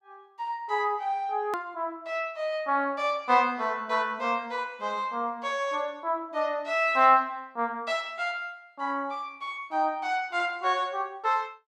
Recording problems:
hard cut with a click; at 1.5 s

